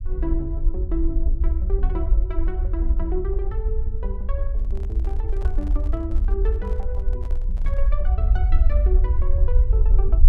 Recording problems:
rumble; below 56 Hz, SNR -10 dB
microphone handling noise; from 4.5 to 8 s; peak -6 dB vs average level

